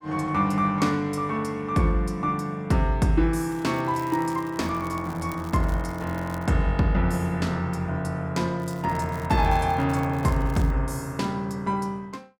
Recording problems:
crackling; from 3.5 to 6.5 s and from 8.5 to 11 s; loose cable, SNR 24 dB

